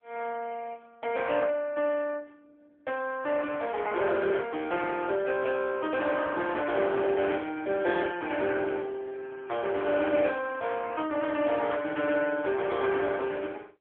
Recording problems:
telephone audio; 300 Hz to 3.4 kHz, AMR-NB

